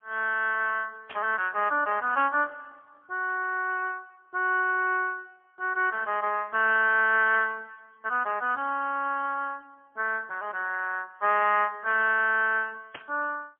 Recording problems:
telephone audio; 240 Hz to 3.3 kHz, AMR-NB, then MP3
burst of static; at 1 s and at 13 s; peak -9 dB vs average level

